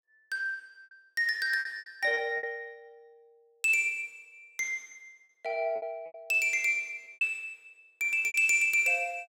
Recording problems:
lost packets; 9% of the sound replaced, filled with repeated pitch periods

